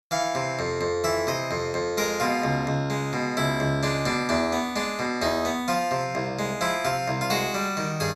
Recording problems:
none

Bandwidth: 13 kHz